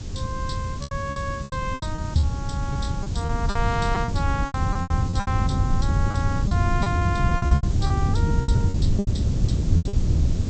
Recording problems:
treble missing; nothing above 8 kHz
background hiss; slope +1 dB per octave, SNR 14 dB
low-frequency rumble; below 140 Hz, SNR -5 dB
lost packets; 15% of the sound replaced, filled with repeated pitch periods

